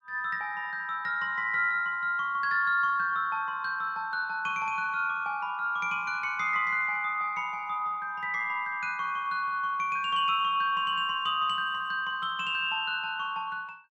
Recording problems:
none

